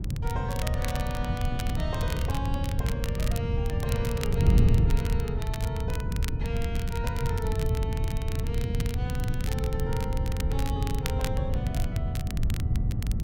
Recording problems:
wind on the microphone; below 130 Hz, SNR -7 dB
crackling; vinyl, SNR 6 dB

